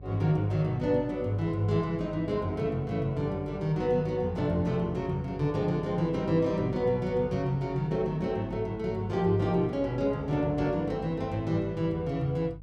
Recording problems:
electrical hum; 50 Hz, harmonics up to 350 Hz, SNR 17 dB

